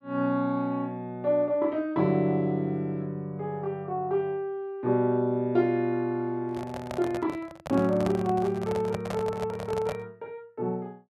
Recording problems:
microphone handling noise; from 6.5 to 10 s; peak -1 dB vs average level

